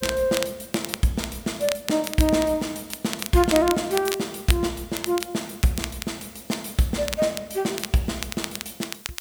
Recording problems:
background hiss; slope +2 dB per octave, SNR 23 dB
crackle; vinyl, SNR 9 dB

